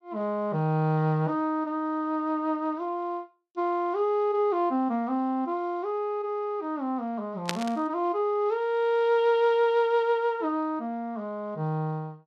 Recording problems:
burst of static; at 7.5 s; peak +2 dB vs average level

